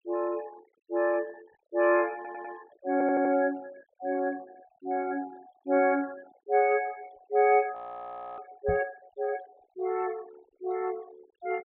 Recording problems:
low-pass filter; nothing above 4 kHz
noise reduction artefacts; signal-to-artefact ratio 23 dB
audio stuttering; at 2 s and at 3 s
audio freezing; at 8 s for 0.5 s
knock on the microphone; at 8.5 s; peak -3 dB vs average level

